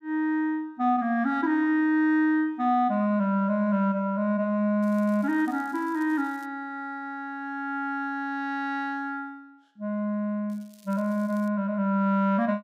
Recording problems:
crackling; from 5 to 6.5 s and at 11 s; loose cable, SNR 30 dB

